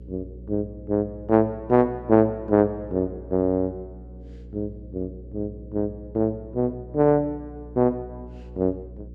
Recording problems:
hum; 60 Hz, harmonics up to 540 Hz, SNR 18 dB

